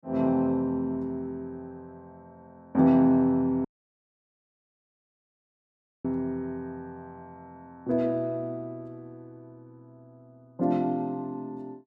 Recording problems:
dropout; at 3.5 s for 2.5 s

